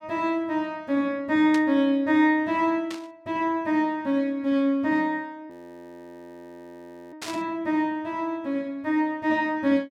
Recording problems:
static burst; at 1.5 s, at 3 s and at 7 s; peak -6 dB vs average level
frozen audio; at 5.5 s for 1.5 s

